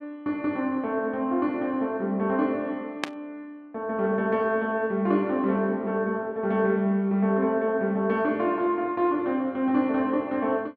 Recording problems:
static burst; at 3 s; peak +1 dB vs average level

